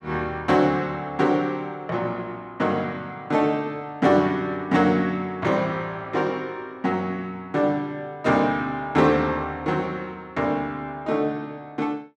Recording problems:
none

